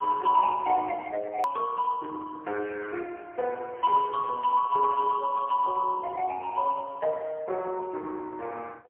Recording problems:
phone line; 320 Hz to 3 kHz, AMR-NB, then MP3
hard cut with a click; at 1.5 s

